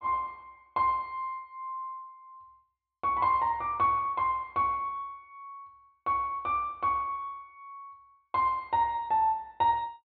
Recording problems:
low-pass filter; nothing above 4.4 kHz

